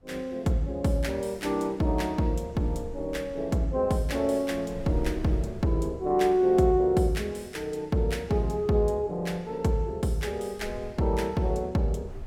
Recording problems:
wind noise; below 96 Hz, SNR 17 dB

